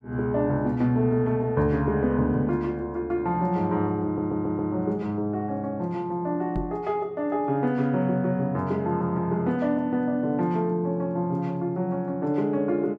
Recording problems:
stutter; at 4 s
microphone thump; at 6.5 s; peak -2 dB vs average level

